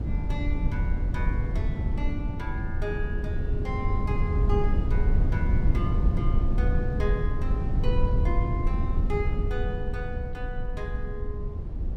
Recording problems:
wind noise; below 92 Hz, SNR -8 dB

